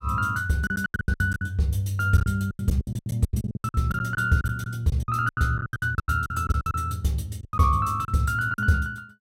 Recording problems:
packet loss; 20% of the sound replaced, filled with silence

